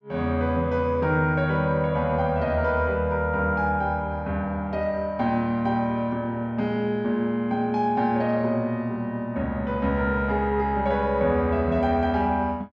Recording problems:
none

